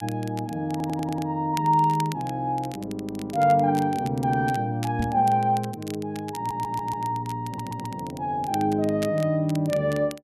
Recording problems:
crackle; vinyl, SNR 19 dB
stutter; at 0.5 s, at 6.5 s and at 7.5 s
microphone bump; at 5 s; peak 0 dB vs average level

